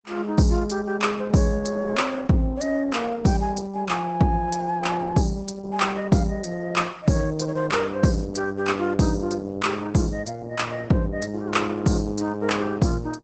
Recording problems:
codec artefacts; Opus, log-spectral distance 3 dB, nothing above 8 kHz

